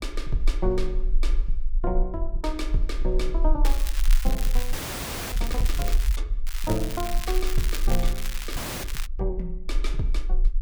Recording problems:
low-frequency rumble; below 38 Hz, strongest tone 20 Hz, SNR -3 dB
crackle; from 3.5 to 6 s and from 6.5 to 9 s; loose cable, SNR 4 dB
frozen audio; at 4.5 s for 0.5 s and at 8.5 s

